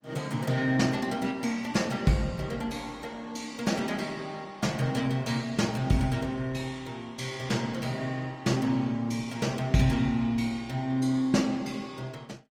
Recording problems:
lossy codec; Opus, log-spectral distance 3 dB, nothing above 19 kHz

